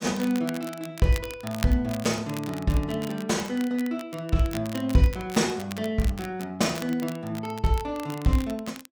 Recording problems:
crackling; vinyl, SNR 15 dB

